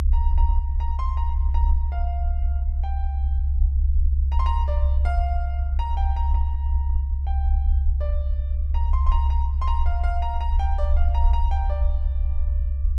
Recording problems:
low-frequency rumble; below 70 Hz, strongest tone 68 Hz, SNR -11 dB

